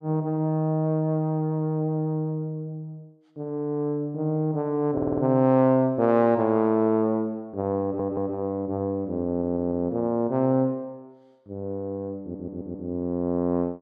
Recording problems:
audio stuttering; 4 times, first at 5 s

